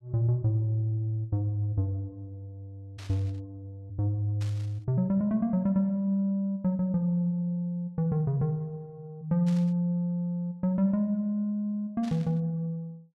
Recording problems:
burst of static; 4 times, first at 3 s; peak -13 dB vs average level

